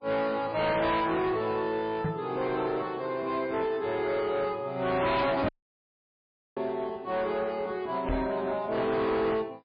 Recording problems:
lossy codec; MP3, log-spectral distance 2 dB, nothing above 4.8 kHz
distorted audio; hard clipping, signal-to-distortion ratio 7 dB
microphone thump; at 2 s, at 5.5 s and at 8 s; peak +3 dB vs average level
dropout; at 5.5 s for 1 s

